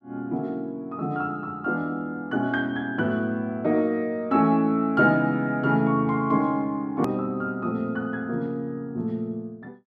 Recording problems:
edit click; at 7 s

